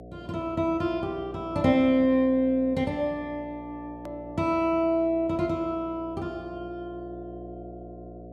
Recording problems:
hum; 60 Hz, harmonics up to 720 Hz, SNR 17 dB
hard cut with a click; at 4 s

